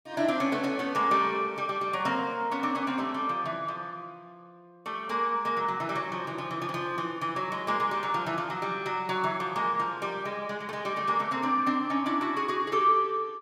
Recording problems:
none

